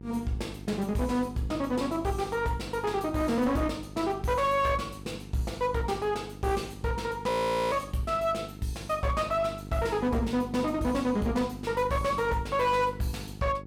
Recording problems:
distorted audio; hard clipping, signal-to-distortion ratio 11 dB
hum; 50 Hz, harmonics up to 850 Hz, SNR 14 dB
audio freezing; at 7.5 s

